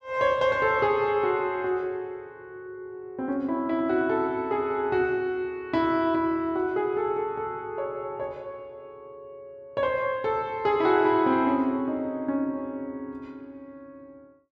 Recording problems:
none

